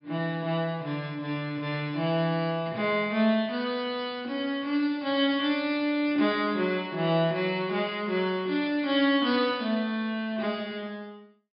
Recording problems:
treble missing; nothing above 5.5 kHz

